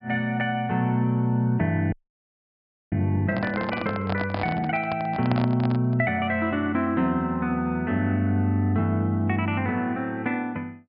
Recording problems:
low-pass filter; nothing above 5.2 kHz
frozen audio; at 2 s for 1 s
handling noise; from 3.5 to 6 s; peak 0 dB vs average level

